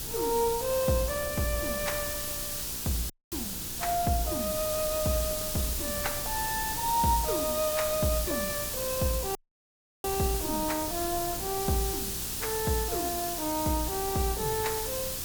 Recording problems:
hum; 60 Hz, harmonics up to 960 Hz, SNR 18 dB
background hiss; SNR 1 dB
wind on the microphone; below 160 Hz, SNR 15 dB
audio cutting out; at 3 s and at 9.5 s for 0.5 s

